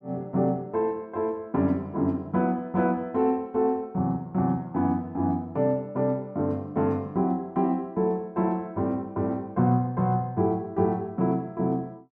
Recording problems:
none

